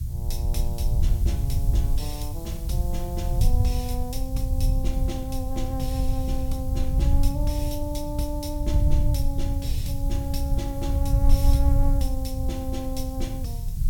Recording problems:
background hiss; SNR 13 dB
low-frequency rumble; below 76 Hz, SNR -6 dB

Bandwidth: 17 kHz